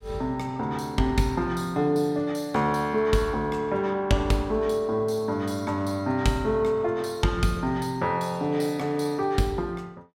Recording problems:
none

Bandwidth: 16 kHz